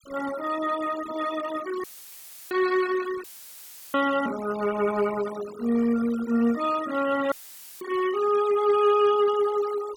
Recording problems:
denoising artefacts; signal-to-artefact ratio 16 dB
dropout; at 2 s for 0.5 s, at 3 s for 0.5 s and at 7.5 s; filled with static

